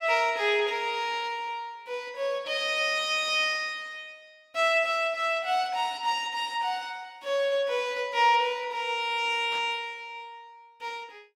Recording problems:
burst of static; at 9.5 s; peak -14 dB vs average level

